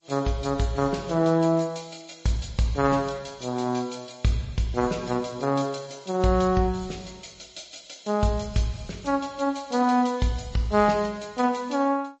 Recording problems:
codec artefacts; G.722, then MP3, log-spectral distance 5 dB, nothing above 7.6 kHz

